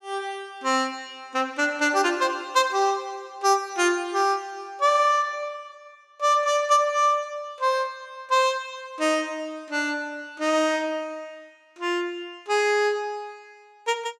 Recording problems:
none

